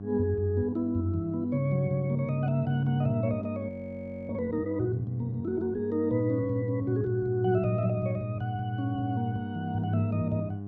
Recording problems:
hum; 50 Hz, harmonics up to 800 Hz, SNR 10 dB
frozen audio; at 3.5 s for 0.5 s

